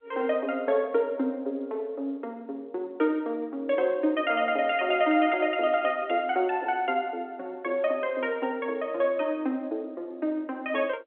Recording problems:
telephone audio; 260 Hz to 3.4 kHz, G.711

